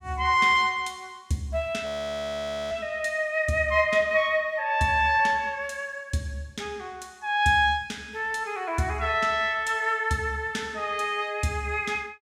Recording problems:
audio freezing; at 2 s for 1 s

